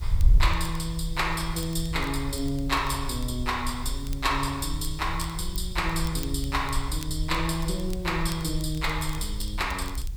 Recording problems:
hiss; slope 0 dB per octave, SNR 24 dB
wind noise; below 64 Hz, SNR 4 dB
crackle; vinyl, SNR 19 dB

